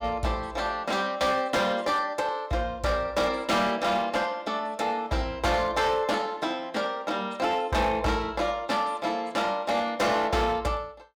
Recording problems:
distortion; hard clipping, signal-to-distortion ratio 11 dB

